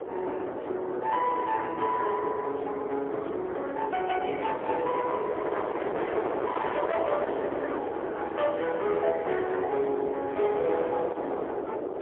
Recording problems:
telephone audio; 320 Hz to 3 kHz, AMR-NB, then MP3
distortion; hard clipping, signal-to-distortion ratio 13 dB
wind on the microphone; below 750 Hz, SNR 4 dB

